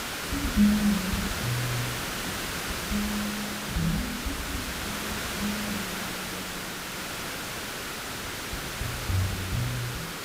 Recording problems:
background hiss; SNR 1 dB

